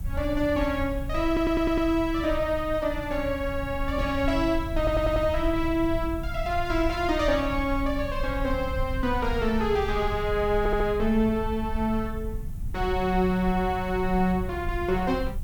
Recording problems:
background hiss; SNR 27 dB
rumble; below 78 Hz, SNR 9 dB
audio stuttering; at 1.5 s, at 5 s and at 11 s

